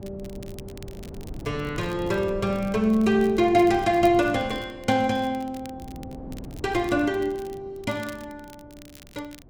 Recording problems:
wind on the microphone; below 290 Hz, SNR 17 dB
crackle; vinyl, SNR 26 dB

